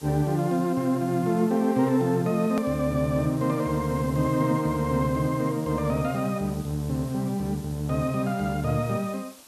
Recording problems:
background hiss; SNR 21 dB
hard cut with a click; at 2.5 s

